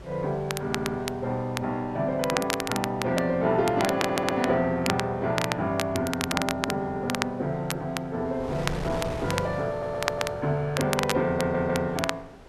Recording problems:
wind on the microphone; below 900 Hz, SNR 16 dB
crackling; vinyl, SNR 6 dB
audio stuttering; 4 times, first at 0.5 s

